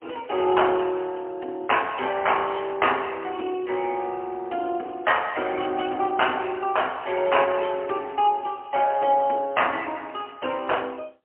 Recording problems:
telephone audio; 220 Hz to 3.1 kHz, AMR-NB, then MP3

